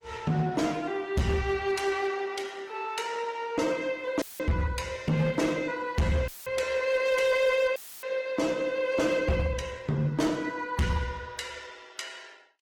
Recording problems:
lossy compression; Opus, log-spectral distance 3 dB, nothing above 18.9 kHz
distortion; hard clipping, signal-to-distortion ratio 11 dB
dropout; at 4 s, at 6.5 s and at 8 s; filled with static

